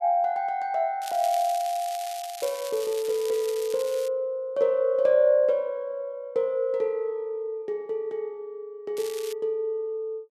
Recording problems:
crackle; from 1 to 4 s and at 9 s; loose cable, SNR 14 dB

